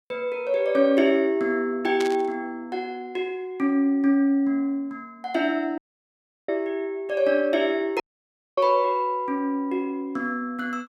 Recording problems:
burst of static; at 2 s; peak -5 dB vs average level
audio cutting out; at 6 s for 0.5 s and at 8 s for 0.5 s

